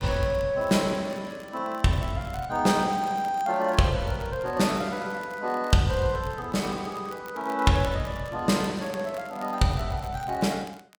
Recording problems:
crackling; vinyl, SNR 24 dB

